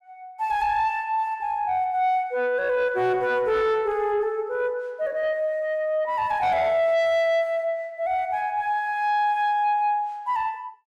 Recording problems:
distorted audio; soft clipping, signal-to-distortion ratio 12 dB

